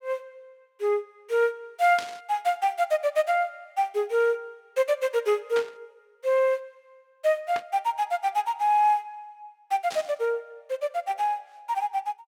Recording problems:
burst of static; 4 times, first at 2 s; peak -4 dB vs average level

